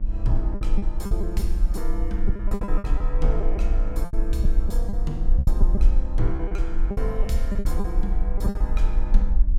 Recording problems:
mains hum; 50 Hz, harmonics up to 900 Hz, SNR 8 dB
low-frequency rumble; below 42 Hz, strongest tone 20 Hz, SNR -7 dB
packet loss; 12% of the sound replaced, filled with repeated pitch periods

